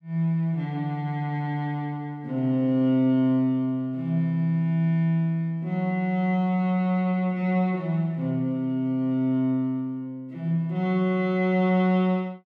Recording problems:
none

